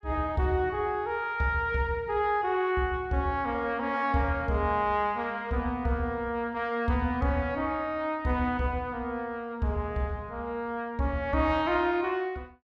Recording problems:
none

